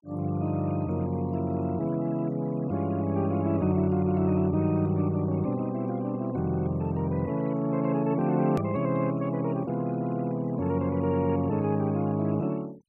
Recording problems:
denoising artefacts; signal-to-artefact ratio 24 dB
edit click; at 8.5 s

